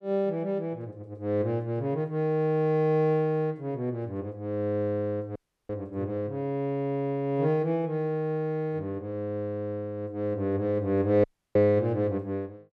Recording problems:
audio cutting out; at 5.5 s and at 11 s

